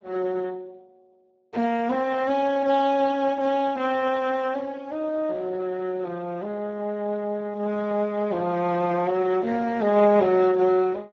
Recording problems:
lossy compression; Speex, log-spectral distance 2 dB

